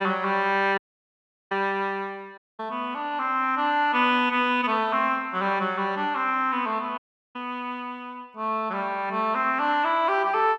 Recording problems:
dropout; at 1 s for 0.5 s, at 2.5 s and at 7 s

